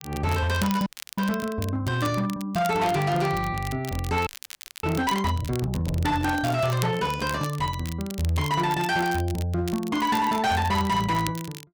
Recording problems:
distorted audio; hard clipping, signal-to-distortion ratio 12 dB
crackle; vinyl, SNR 15 dB
audio freezing; at 1 s and at 4.5 s for 0.5 s
microphone handling noise; from 6 to 7.5 s; peak -8 dB vs average level

